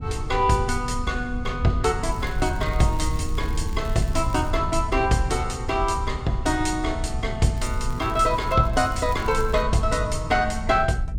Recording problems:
rumble; below 86 Hz, SNR 7 dB
crackling; from 2 to 4.5 s, at 7.5 s and from 8.5 to 9.5 s; loose cable, SNR 24 dB

